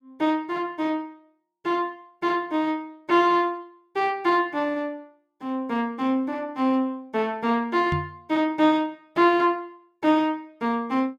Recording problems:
microphone bump; at 8 s; peak 0 dB vs average level

